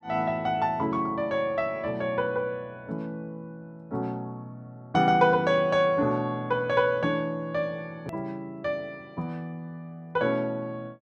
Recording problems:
edit click; at 8 s

